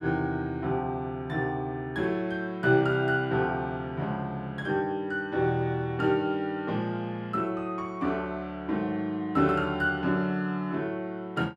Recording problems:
none

